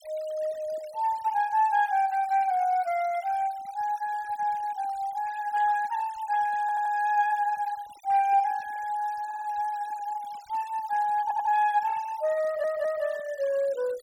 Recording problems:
denoising artefacts; signal-to-artefact ratio 22 dB
audio stuttering; 4 times, first at 6.5 s

